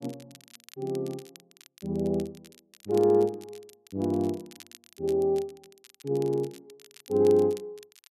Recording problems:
crackle; vinyl, SNR 24 dB

